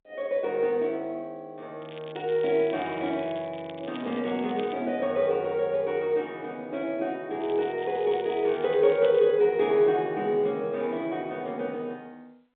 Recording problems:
telephone audio; 300 Hz to 3.7 kHz, G.711
crackle; from 2 to 4.5 s and from 7.5 to 9 s; loose cable, SNR 21 dB

